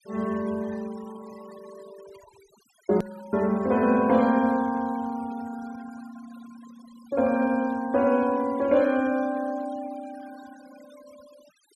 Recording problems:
noise reduction artefacts; signal-to-artefact ratio 23 dB
click at an edit; at 3 s

